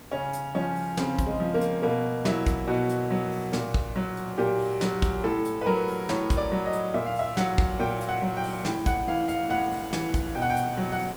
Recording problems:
hiss; slope -5 dB per octave, SNR 16 dB

